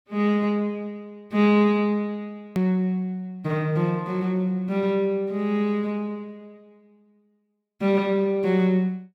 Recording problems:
click at an edit; at 2.5 s

